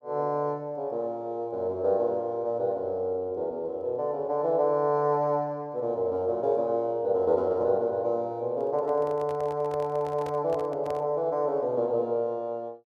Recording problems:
handling noise; from 8.5 to 11 s; peak -7 dB vs average level

